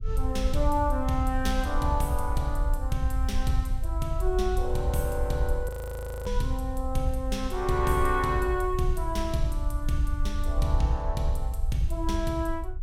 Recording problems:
rumble; below 60 Hz, SNR 3 dB
frozen audio; at 5.5 s for 0.5 s

